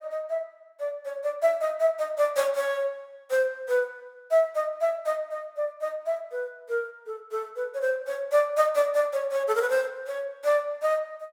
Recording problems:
none

